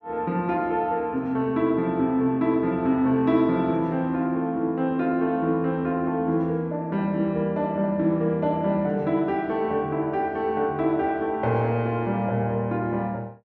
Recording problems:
none

